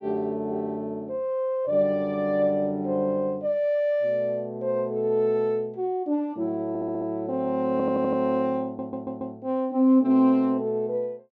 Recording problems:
stutter; at 6.5 s, at 7.5 s and at 8.5 s

